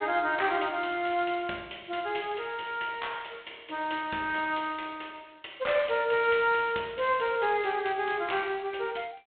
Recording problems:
phone line; 220 Hz to 3.6 kHz, G.726

